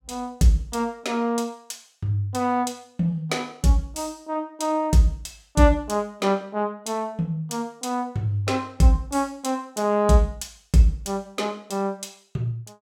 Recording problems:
none

